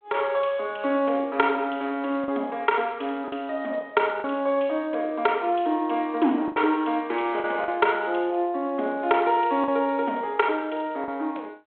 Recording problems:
phone line; 240 Hz to 3.5 kHz, G.726
packet loss; 3% of the sound replaced, filled with the last packet

